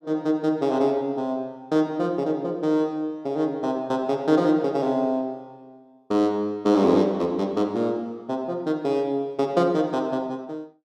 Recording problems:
none

